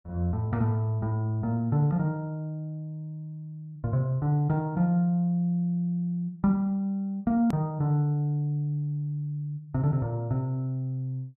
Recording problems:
hard cut with a click; at 7.5 s

